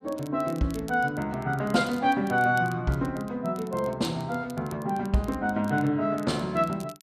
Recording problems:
crackle; vinyl, SNR 24 dB

